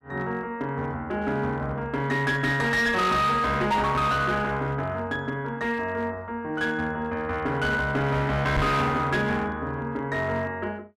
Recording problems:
distortion; hard clipping, uneven, signal-to-distortion ratio 10 dB
knock on the microphone; at 8.5 s; peak +1 dB vs average level

